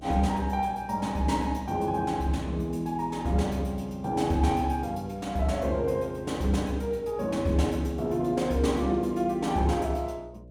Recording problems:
electrical hum; 60 Hz, harmonics up to 660 Hz, SNR 20 dB

